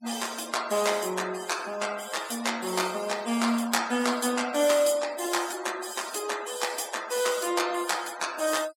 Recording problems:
noise reduction artefacts; signal-to-artefact ratio 15 dB

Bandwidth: 18 kHz